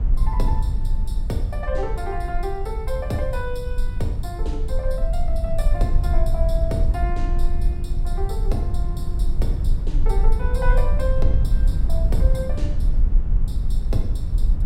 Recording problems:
rumble; below 52 Hz, strongest tone 22 Hz, SNR -6 dB

